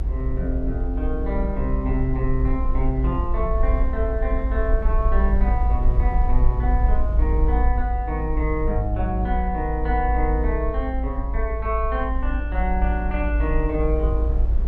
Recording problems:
low-frequency rumble; below 56 Hz, SNR -3 dB

